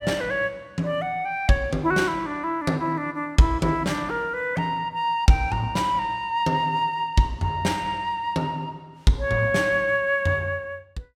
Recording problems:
none

